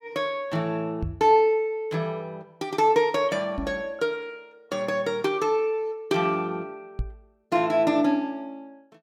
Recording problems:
microphone bump; at 1 s, at 3.5 s and at 7 s; peak -1 dB vs average level

